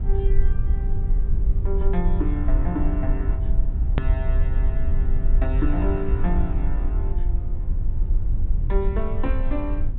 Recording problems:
treble cut off; nothing above 4 kHz
low-frequency rumble; below 58 Hz, SNR -6 dB
click at an edit; at 4 s

